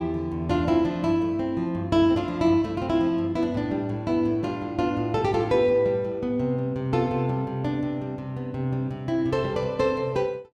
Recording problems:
none

